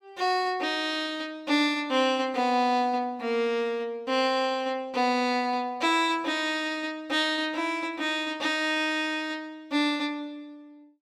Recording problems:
none

